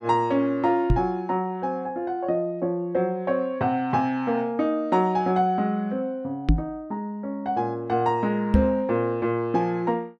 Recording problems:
microphone bump; at 1 s, at 6.5 s and at 8.5 s; peak +8 dB vs average level

